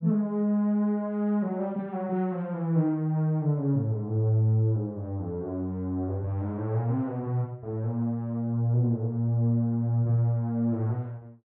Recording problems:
low-pass filter; nothing above 4.3 kHz

